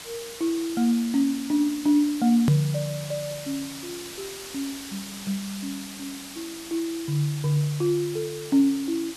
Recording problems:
hiss; slope 0 dB per octave, SNR 13 dB
edit click; at 2.5 s

